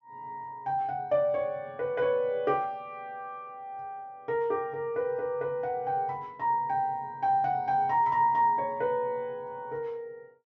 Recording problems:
treble missing; nothing above 7 kHz

